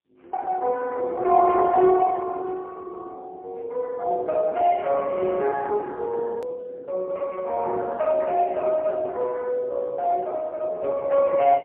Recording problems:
telephone audio; 300 Hz to 2.8 kHz, AMR-NB, then MP3
click at an edit; at 6.5 s

